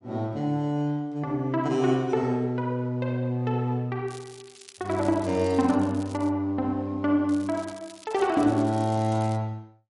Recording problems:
lossy compression; MP3, log-spectral distance 2 dB, nothing above 11 kHz
crackle; from 4 to 6.5 s and from 7.5 to 9.5 s; loose cable, SNR 22 dB

